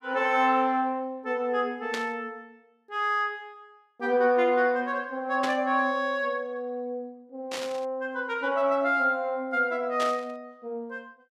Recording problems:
static burst; 4 times, first at 2 s; peak -2 dB vs average level

